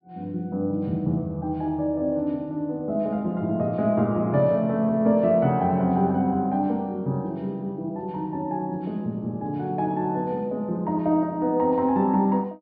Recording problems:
treble missing; nothing above 5.5 kHz

